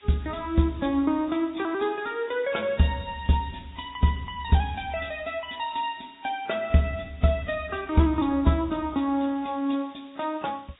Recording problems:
treble missing; nothing above 3.8 kHz
lossy compression; AAC, log-spectral distance 8 dB
hiss; SNR 28 dB

